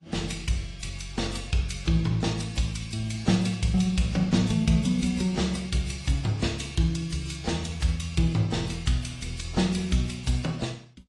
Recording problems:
codec artefacts; AAC, then AAC, log-spectral distance 4 dB, nothing above 10.1 kHz

